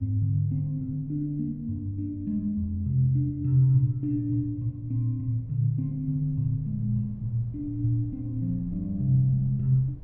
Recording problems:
rumble; below 110 Hz, SNR 20 dB

